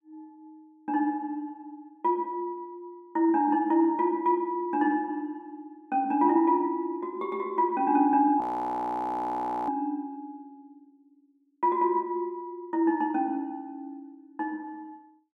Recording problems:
audio freezing; at 8.5 s for 1.5 s

